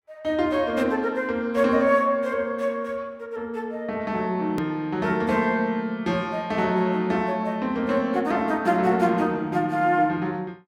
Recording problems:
edit click; at 4.5 s

